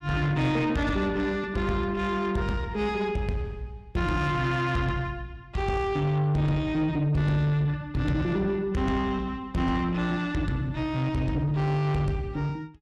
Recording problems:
distortion; soft clipping, signal-to-distortion ratio 12 dB

